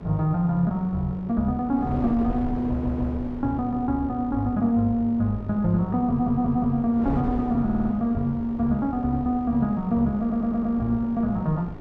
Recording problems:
hum; 50 Hz, harmonics up to 2.4 kHz, SNR 22 dB
wind on the microphone; below 400 Hz, SNR 14 dB
audio stuttering; 4 times, first at 2.5 s

